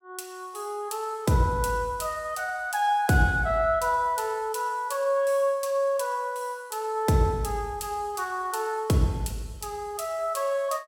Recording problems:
none

